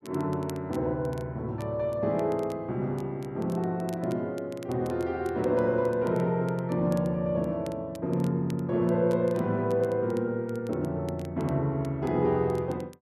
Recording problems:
crackling; vinyl, SNR 26 dB

